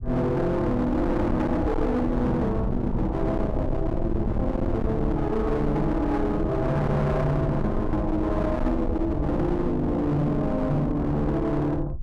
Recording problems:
distorted audio; hard clipping, signal-to-distortion ratio 8 dB
low-frequency rumble; below 140 Hz, SNR 6 dB

